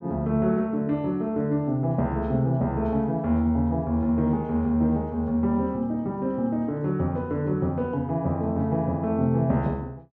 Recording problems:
treble cut off; nothing above 7.9 kHz

